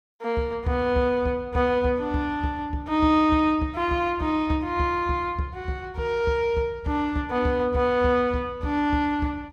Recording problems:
none

